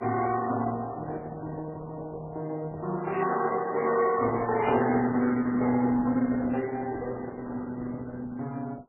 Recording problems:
lossy codec; Opus, then MP3, log-spectral distance 3 dB, nothing above 2.9 kHz

